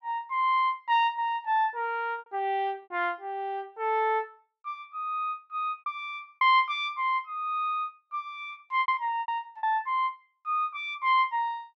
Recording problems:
packet loss; 5% of the sound replaced, filled with repeated pitch periods

